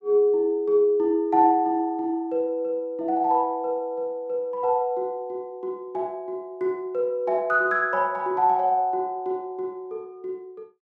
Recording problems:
none

